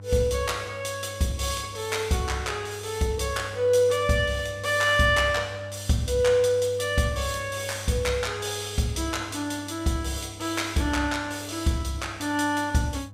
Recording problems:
electrical hum; 50 Hz, harmonics up to 800 Hz, SNR 16 dB

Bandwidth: 15.5 kHz